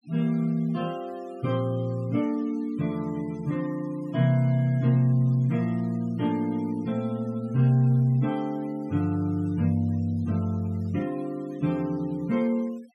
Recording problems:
denoising artefacts; signal-to-artefact ratio 26 dB

